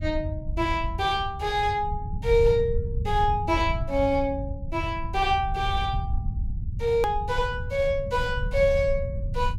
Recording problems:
low-frequency rumble; below 96 Hz, SNR 6 dB
click at an edit; at 7 s

